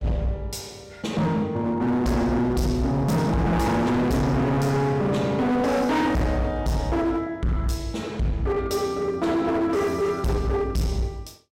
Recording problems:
distortion; hard clipping, uneven, signal-to-distortion ratio 6 dB

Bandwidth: 16.5 kHz